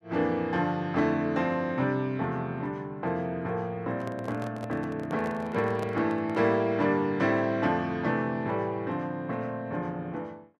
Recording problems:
microphone handling noise; from 4 to 6.5 s; peak -5 dB vs average level

